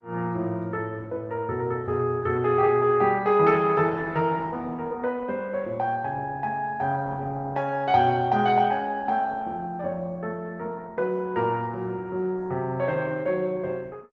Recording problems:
lossy compression; Opus, log-spectral distance 2 dB

